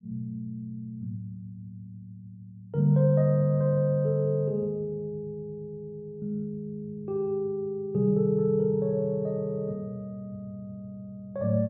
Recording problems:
none

